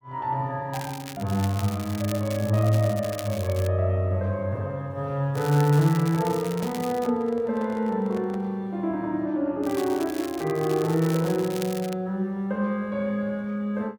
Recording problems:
crackling; from 0.5 to 3.5 s, from 5.5 to 7 s and from 9.5 to 12 s; loose cable, SNR 15 dB
microphone handling noise; from 5.5 to 8.5 s; peak -10 dB vs average level

